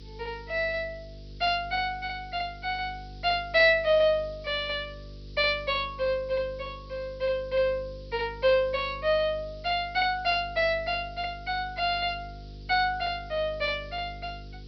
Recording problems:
treble missing; nothing above 5.5 kHz
hum; 50 Hz, harmonics up to 500 Hz, SNR 18 dB
hiss; SNR 27 dB

